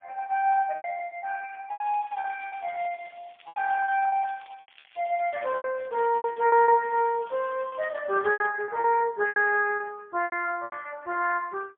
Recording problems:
telephone audio; 370 Hz to 3.3 kHz, AMR-NB, then MP3
lost packets; 11% of the sound replaced, filled with repeated pitch periods
crackling; from 1.5 to 5.5 s and from 6 to 8.5 s; loose cable, SNR 27 dB

